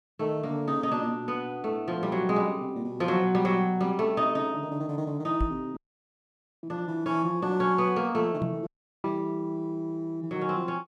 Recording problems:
microphone bump; at 5.5 s and at 8.5 s; peak +2 dB vs average level
audio cutting out; at 6 s for 1 s and at 8.5 s

